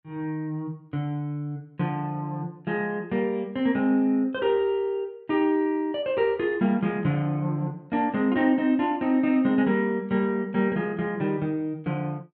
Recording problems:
none

